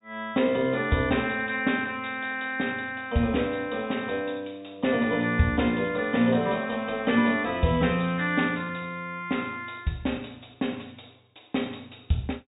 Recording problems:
low-pass filter; nothing above 4 kHz

